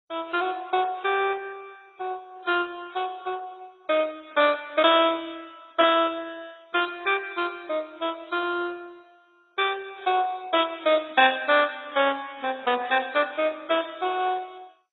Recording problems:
codec artefacts; AAC, then MP2, log-spectral distance 5 dB, nothing above 3.7 kHz

